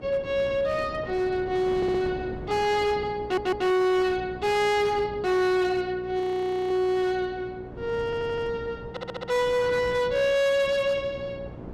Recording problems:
distortion; hard clipping, signal-to-distortion ratio 11 dB
hum; 60 Hz, harmonics up to 1.1 kHz, SNR 19 dB
wind noise; below 500 Hz, SNR 17 dB
audio stuttering; 4 times, first at 2 s
frozen audio; at 6 s for 0.5 s

